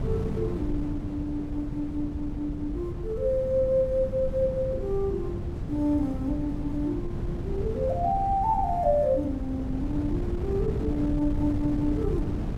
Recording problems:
wind on the microphone; below 200 Hz, SNR 5 dB

